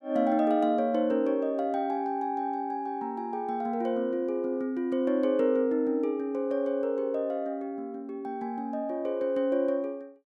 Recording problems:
none

